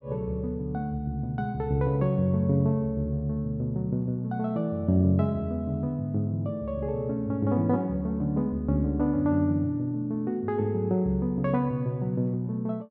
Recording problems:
none

